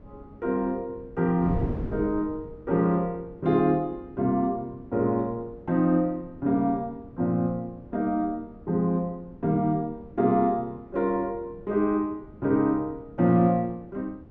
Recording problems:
wind noise; below 280 Hz, SNR 16 dB

